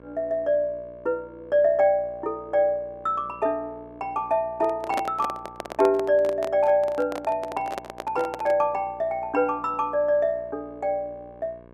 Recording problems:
hum; 60 Hz, harmonics up to 2.2 kHz, SNR 24 dB
handling noise; from 4.5 to 8.5 s; peak +1 dB vs average level

